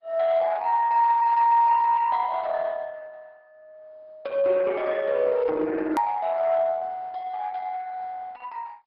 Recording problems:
low-pass filter; nothing above 5.2 kHz
lossy codec; Opus, log-spectral distance 3 dB
hard cut with a click; at 6 s

